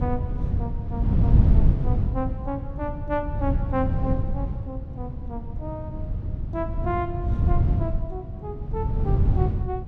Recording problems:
wind noise; below 120 Hz, SNR -7 dB

